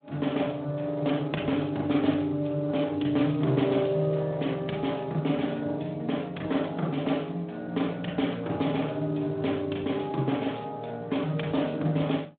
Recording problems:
telephone audio; 170 Hz to 3.6 kHz, Speex

